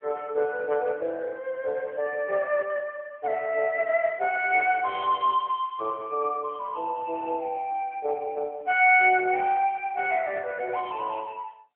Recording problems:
phone line; 340 Hz to 3.5 kHz, AMR-NB

